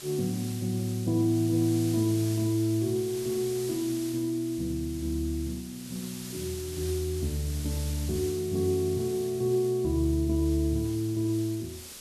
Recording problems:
background hiss; SNR 13 dB

